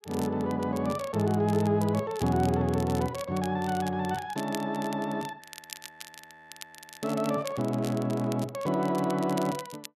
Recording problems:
crackling; vinyl, SNR 17 dB
frozen audio; at 5.5 s for 1.5 s
handling noise; from 7 to 8.5 s; peak -11 dB vs average level

